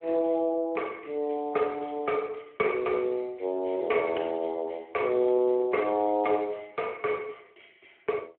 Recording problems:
telephone audio; 280 Hz to 3.2 kHz, Speex

